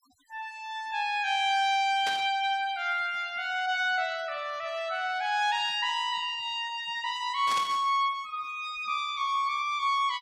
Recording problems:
denoising artefacts; signal-to-artefact ratio 26 dB
burst of static; at 2 s and at 7.5 s; peak -3 dB vs average level

